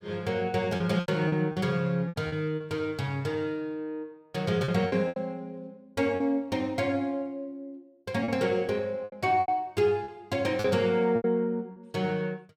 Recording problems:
lost packets; 8% of the sound replaced, filled with repeated pitch periods

